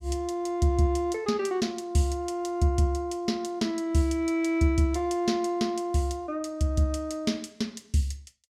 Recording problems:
none

